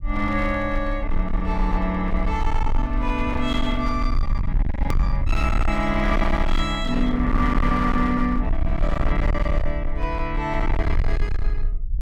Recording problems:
distorted audio; hard clipping, signal-to-distortion ratio 8 dB
rumble; below 56 Hz, SNR 2 dB
click at an edit; at 5 s

